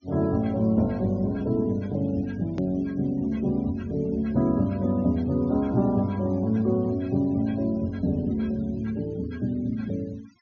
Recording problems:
low-pass filter; nothing above 6.6 kHz
denoising artefacts; signal-to-artefact ratio 26 dB
edit click; at 2.5 s

